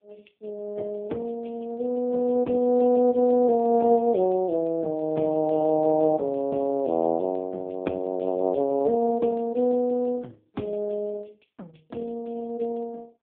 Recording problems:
telephone audio; 170 Hz to 3.7 kHz, AMR-NB

